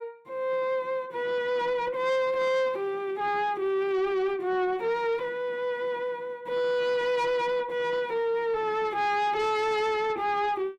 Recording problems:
distortion; soft clipping, signal-to-distortion ratio 10 dB

